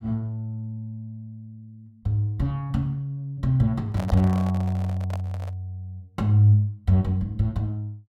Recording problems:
microphone handling noise; from 4 to 5.5 s; peak -4 dB vs average level

